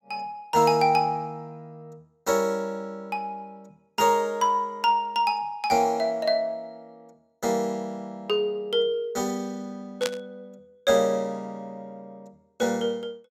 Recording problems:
burst of static; at 10 s; peak +1 dB vs average level

